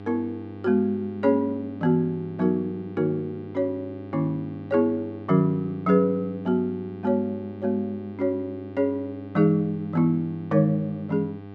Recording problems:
hum; 50 Hz, harmonics up to 1.6 kHz, SNR 15 dB

